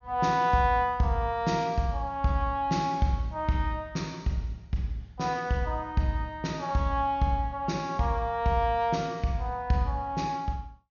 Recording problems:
low-pass filter; nothing above 6.8 kHz

